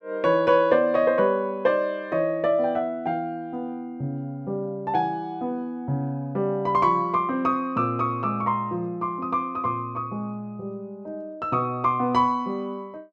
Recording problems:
none

